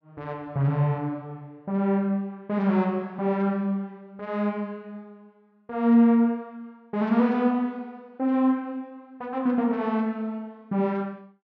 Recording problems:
none

